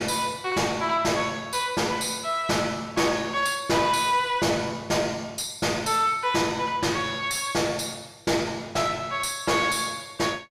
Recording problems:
distortion; soft clipping, signal-to-distortion ratio 10 dB

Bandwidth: 15 kHz